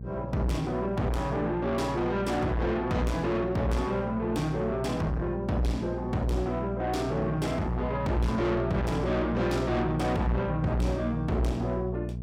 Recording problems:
distorted audio; soft clipping, signal-to-distortion ratio 7 dB
hum; 60 Hz, harmonics up to 480 Hz, SNR 7 dB

